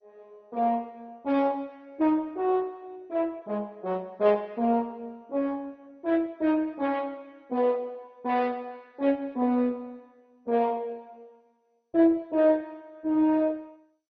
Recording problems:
lossy compression; MP2, log-spectral distance 2 dB, nothing above 5.3 kHz

